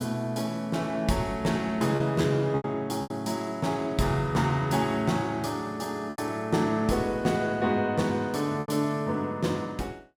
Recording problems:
lost packets; 4% of the sound replaced, filled with repeated pitch periods

